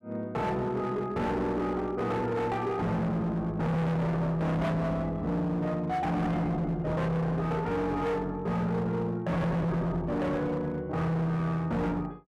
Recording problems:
distorted audio; hard clipping, uneven, signal-to-distortion ratio 6 dB

